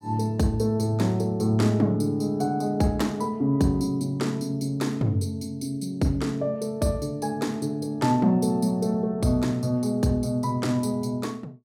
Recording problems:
none

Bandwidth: 16.5 kHz